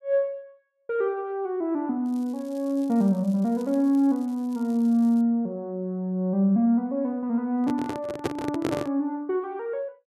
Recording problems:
crackle; from 2 to 5 s; loose cable, SNR 29 dB
microphone handling noise; from 7.5 to 9 s; peak +3 dB vs average level

